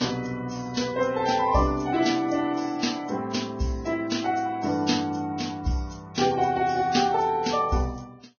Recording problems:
lossy compression; Vorbis, log-spectral distance 4 dB, nothing above 6.5 kHz

